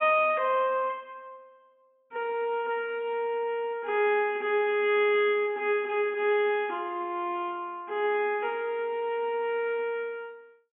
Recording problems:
treble cut off; nothing above 3.3 kHz

